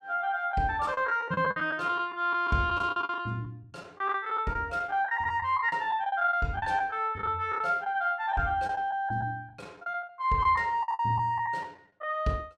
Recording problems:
lost packets; 12% of the sound replaced, filled with the last packet

